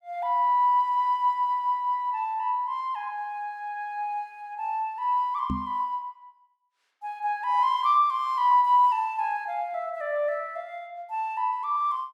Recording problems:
microphone bump; at 5.5 s; peak 0 dB vs average level

